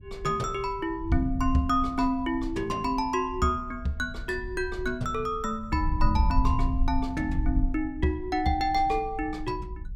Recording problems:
wind noise; below 70 Hz, SNR 6 dB

